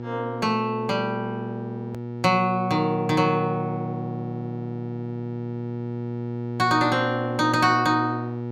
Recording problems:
hum; 60 Hz, harmonics up to 960 Hz, SNR 8 dB
hard cut with a click; at 2 s

